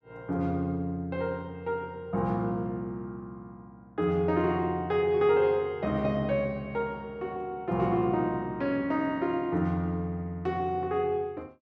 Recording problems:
none

